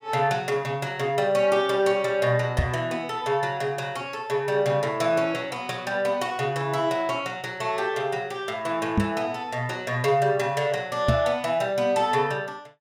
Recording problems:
knock on the microphone; at 2.5 s, at 9 s and at 11 s; peak +6 dB vs average level

